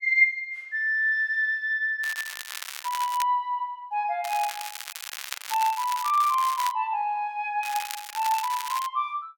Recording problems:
crackling; from 2 to 3 s, from 4 to 6.5 s and from 7.5 to 9 s; loose cable, SNR 10 dB

